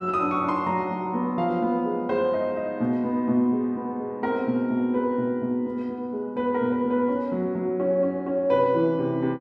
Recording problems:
none

